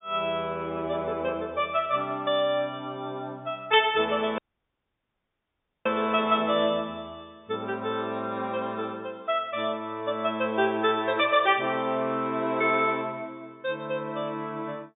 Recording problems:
treble cut off; nothing above 3.7 kHz
audio cutting out; at 4.5 s for 1.5 s

